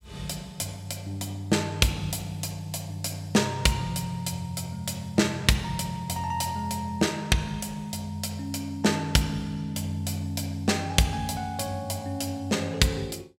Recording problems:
none

